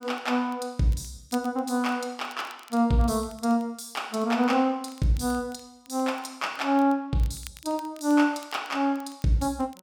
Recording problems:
crackling; vinyl, SNR 25 dB

